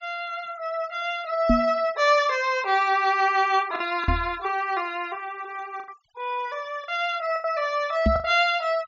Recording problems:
treble cut off; nothing above 7.4 kHz
noise reduction artefacts; signal-to-artefact ratio 24 dB
lost packets; 4% of the sound replaced, filled with the last packet
microphone thump; at 1.5 s, at 4 s and at 8 s; peak +6 dB vs average level

